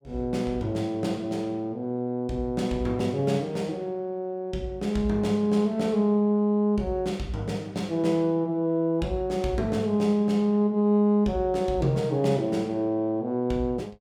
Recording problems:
none

